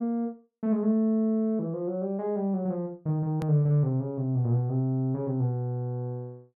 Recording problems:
hard cut with a click; at 3.5 s

